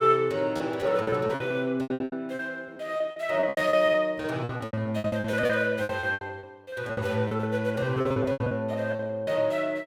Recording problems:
packet loss; 21% of the sound replaced, filled with repeated pitch periods

